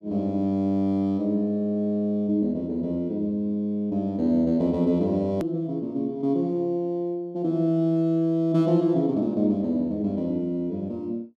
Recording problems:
edit click; at 5.5 s

